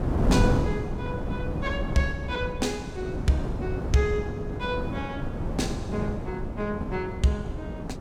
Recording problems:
wind on the microphone; below 300 Hz, SNR 0 dB

